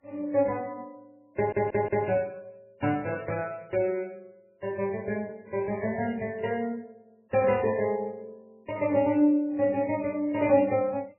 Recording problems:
lossy compression; MP3, then MP3, log-spectral distance 3 dB, nothing above 2.4 kHz
stutter; at 1.5 s

